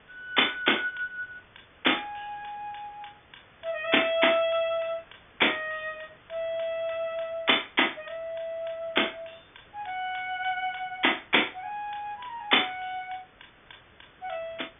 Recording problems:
low-pass filter; nothing above 3.5 kHz
lossy compression; G.722, log-spectral distance 16 dB
background hiss; SNR 27 dB

